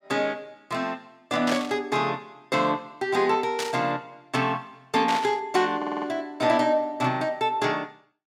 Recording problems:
burst of static; at 1.5 s, at 3.5 s and at 5 s; peak 0 dB vs average level
audio stuttering; at 6 s

